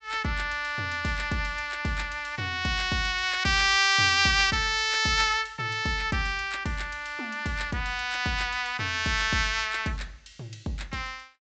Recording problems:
treble cut off; nothing above 8 kHz

